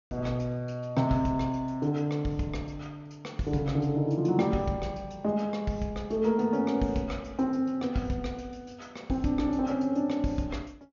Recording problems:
low-pass filter; nothing above 6.9 kHz

